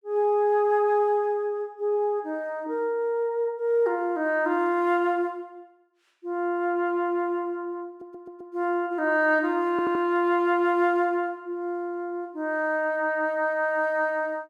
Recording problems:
audio stuttering; at 8 s and at 9.5 s

